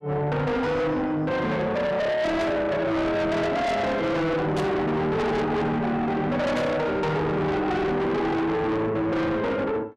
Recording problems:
distorted audio; soft clipping, signal-to-distortion ratio 6 dB
static burst; at 2.5 s, at 4.5 s and at 6.5 s; peak -7 dB vs average level

